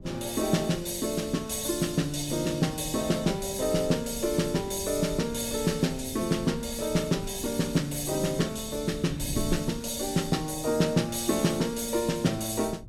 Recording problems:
wind noise; below 160 Hz, SNR 16 dB

